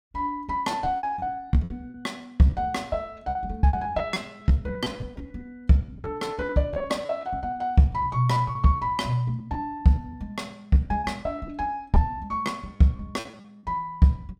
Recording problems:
lost packets; 14% of the sound replaced, filled with repeated pitch periods

